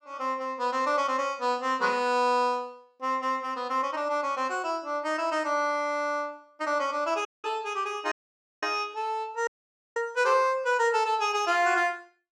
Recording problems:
audio cutting out; at 7.5 s, at 8 s for 0.5 s and at 9.5 s

